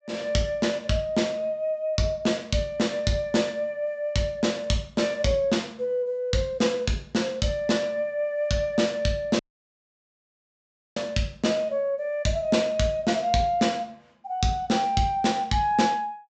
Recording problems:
treble missing; nothing above 8 kHz
audio cutting out; at 9.5 s for 1.5 s

